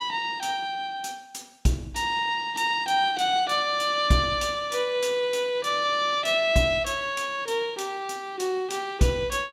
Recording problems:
none

